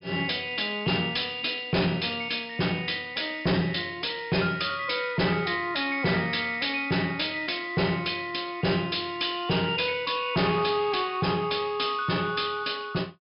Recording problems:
low-pass filter; nothing above 5.5 kHz
distorted audio; hard clipping, signal-to-distortion ratio 10 dB

